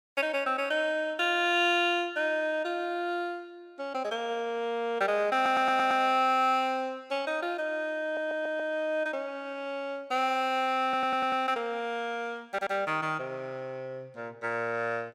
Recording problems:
stutter; 4 times, first at 5.5 s

